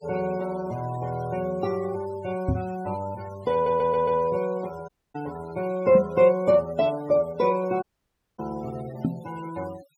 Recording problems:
denoising artefacts; signal-to-artefact ratio 20 dB
microphone bump; at 2.5 s, at 6 s and at 9 s; peak +4 dB vs average level
stutter; at 3.5 s
dropout; at 5 s and at 8 s for 0.5 s

